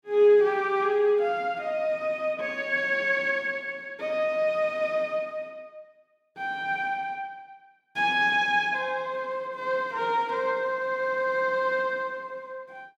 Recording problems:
none

